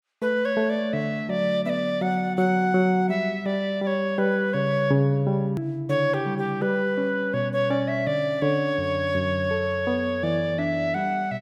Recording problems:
edit click; at 5.5 s

